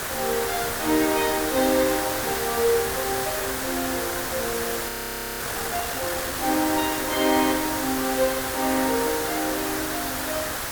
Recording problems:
hiss; SNR 1 dB
audio freezing; at 5 s for 0.5 s

